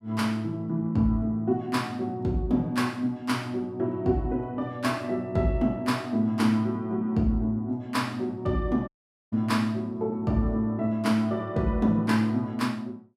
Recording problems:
dropout; at 9 s

